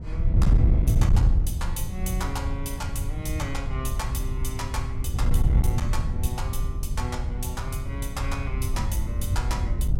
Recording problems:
distorted audio; hard clipping, uneven, signal-to-distortion ratio 12 dB
wind on the microphone; below 98 Hz, SNR -7 dB

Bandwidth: 16 kHz